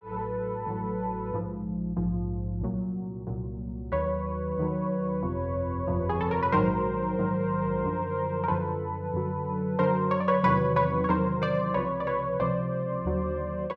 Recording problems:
none

